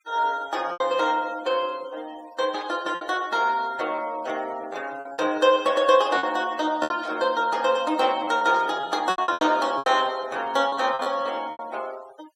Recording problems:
noise reduction artefacts; signal-to-artefact ratio 22 dB
lost packets; 8% of the sound replaced, filled with repeated pitch periods
burst of static; 4 times, first at 2.5 s; peak -15 dB vs average level

